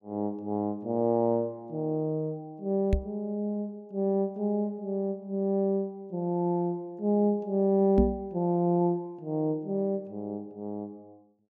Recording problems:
microphone thump; at 3 s and at 8 s; peak +7 dB vs average level

